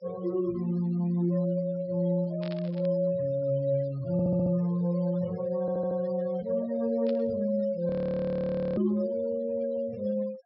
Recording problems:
low-pass filter; nothing above 5.4 kHz
denoising artefacts; signal-to-artefact ratio 22 dB
static burst; at 2.5 s and at 7 s; peak -12 dB vs average level
audio stuttering; at 4 s and at 5.5 s
frozen audio; at 8 s for 1 s

